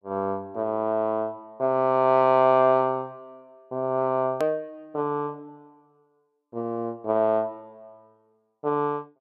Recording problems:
click at an edit; at 4.5 s

